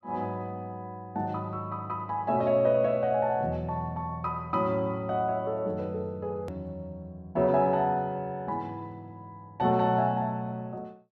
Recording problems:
click at an edit; at 6.5 s

